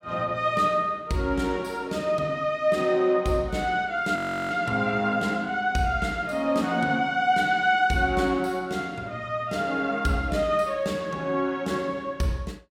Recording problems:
audio freezing; at 4 s

